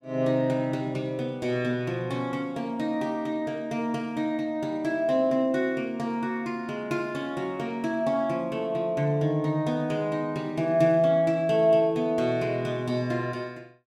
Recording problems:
none

